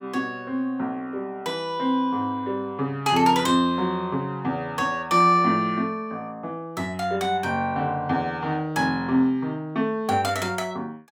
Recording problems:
none

